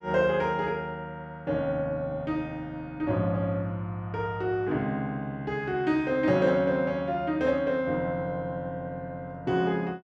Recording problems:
none

